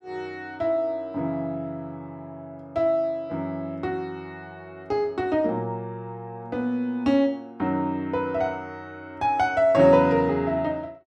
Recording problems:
none

